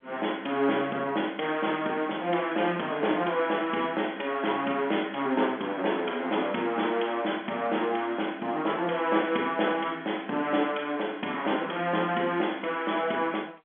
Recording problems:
phone line; 220 Hz to 3.4 kHz, G.711

